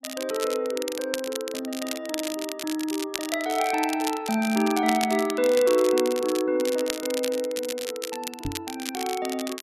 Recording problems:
crackle; vinyl, SNR 8 dB
microphone thump; at 8.5 s; peak -2 dB vs average level

